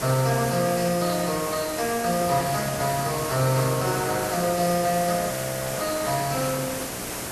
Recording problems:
lossy compression; Speex, then Vorbis, log-spectral distance 5 dB
electrical hum; 60 Hz, harmonics up to 720 Hz, SNR 16 dB
hiss; slope -3 dB per octave, SNR 6 dB
wind noise; below 1 kHz, SNR 17 dB
audio freezing; at 5.5 s

